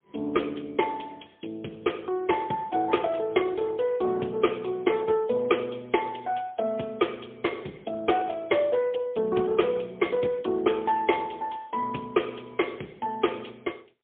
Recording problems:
phone line; 190 Hz to 3.4 kHz, AMR-NB, then MP3

